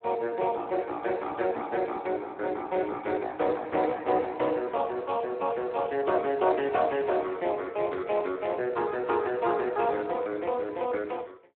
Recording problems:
phone line; 260 Hz to 3.6 kHz, Speex

